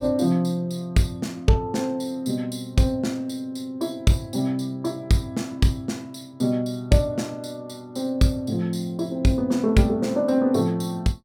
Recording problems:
none

